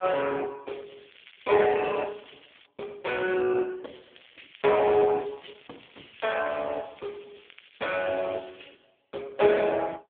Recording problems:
telephone audio; 170 Hz to 3.3 kHz, AMR-NB
crackling; from 0.5 to 2.5 s and from 4 to 9 s; loose cable, SNR 25 dB

